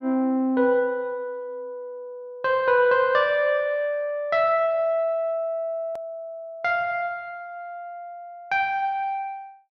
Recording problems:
edit click; at 6 s

